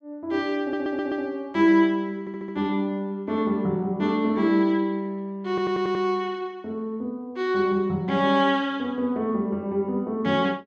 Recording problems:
stutter; at 0.5 s, at 2 s and at 5.5 s

